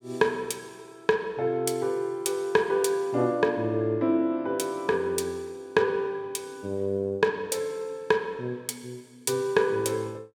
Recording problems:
none

